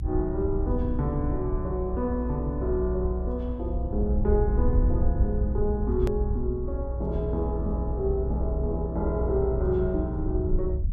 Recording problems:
low-frequency rumble; below 70 Hz, SNR 1 dB
hard cut with a click; at 6 s

